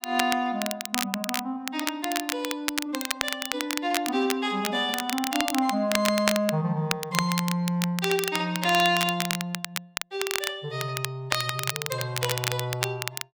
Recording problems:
crackling; vinyl, SNR 3 dB

